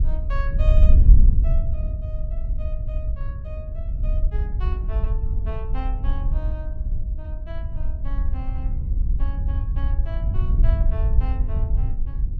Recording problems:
wind on the microphone; below 64 Hz, SNR -16 dB

